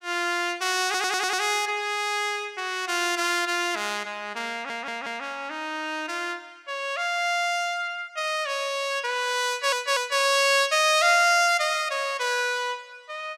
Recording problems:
stutter; at 1 s, at 4.5 s and at 9.5 s

